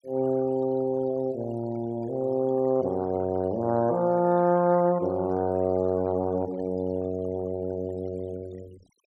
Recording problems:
noise reduction artefacts; signal-to-artefact ratio 24 dB

